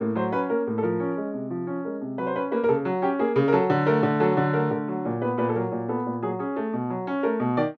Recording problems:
none

